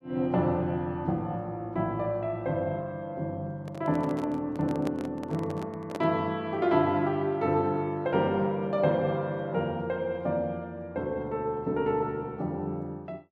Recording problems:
microphone handling noise; from 3.5 to 6 s; peak -3 dB vs average level

